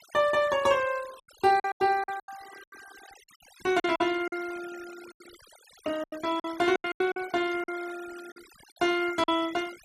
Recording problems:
noise reduction artefacts; signal-to-artefact ratio 19 dB
lost packets; 12% of the sound replaced, filled with silence

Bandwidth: 14.5 kHz